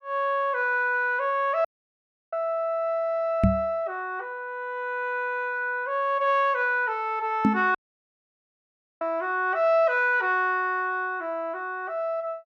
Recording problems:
audio cutting out; at 1.5 s for 0.5 s and at 8 s for 1.5 s
microphone thump; at 3.5 s and at 7.5 s; peak +8 dB vs average level

